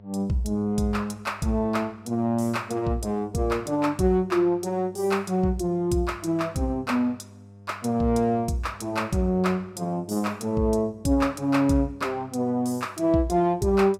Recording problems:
electrical hum; 50 Hz, harmonics up to 900 Hz, SNR 23 dB

